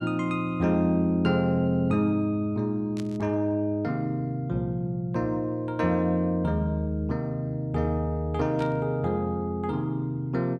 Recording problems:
burst of static; at 3 s and at 8.5 s; peak -12 dB vs average level

